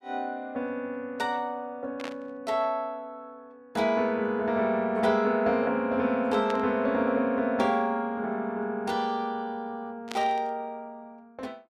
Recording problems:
burst of static; at 2 s, at 6.5 s and at 10 s; peak -5 dB vs average level

